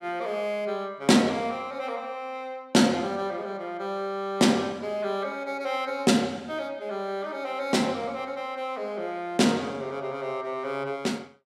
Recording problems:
none

